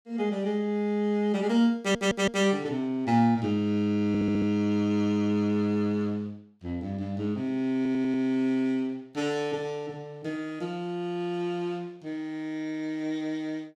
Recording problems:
stutter; at 2 s, at 4 s and at 8 s

